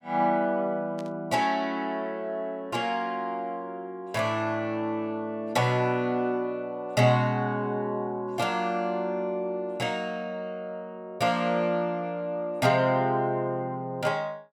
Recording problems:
burst of static; at 1 s; peak -15 dB vs average level

